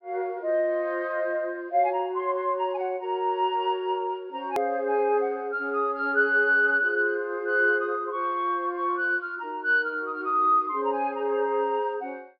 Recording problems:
treble cut off; nothing above 5.5 kHz
edit click; at 4.5 s

